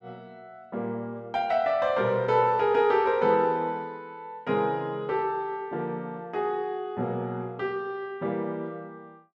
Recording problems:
none

